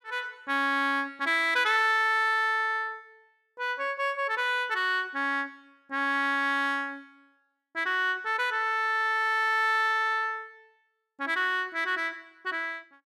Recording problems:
none

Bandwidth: 15 kHz